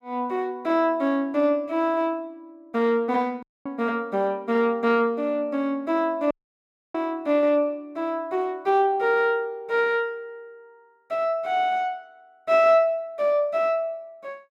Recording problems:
dropout; at 3.5 s and at 6.5 s for 0.5 s

